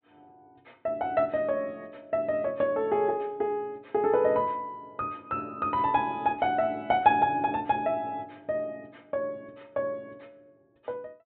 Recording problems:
treble cut off; nothing above 4 kHz

